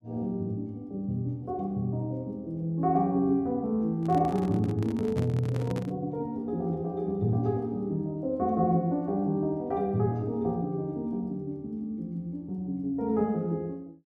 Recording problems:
handling noise; from 4 to 6 s; peak -1 dB vs average level

